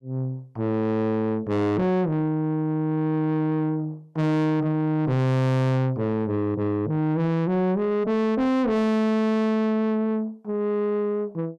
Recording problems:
distortion; soft clipping, signal-to-distortion ratio 6 dB

